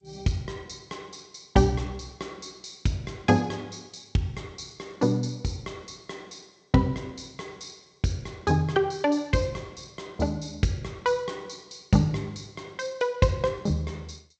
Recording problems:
lossy codec; G.722, log-spectral distance 5 dB, nothing above 7.6 kHz

